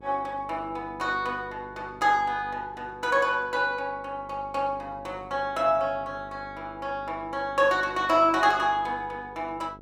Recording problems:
electrical hum; 50 Hz, harmonics up to 1.1 kHz, SNR 21 dB

